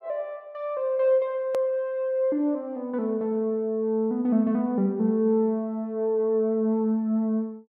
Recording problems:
click at an edit; at 1.5 s

